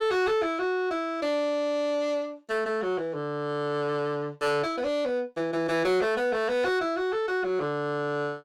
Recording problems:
distortion; soft clipping, signal-to-distortion ratio 10 dB

